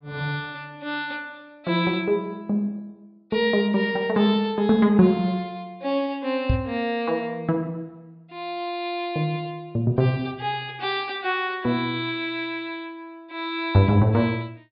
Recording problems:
low-pass filter; nothing above 5.5 kHz
knock on the microphone; at 6.5 s; peak +5 dB vs average level

